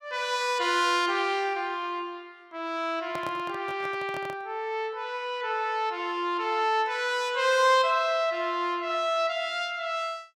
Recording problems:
handling noise; from 3 to 4.5 s; peak -7 dB vs average level

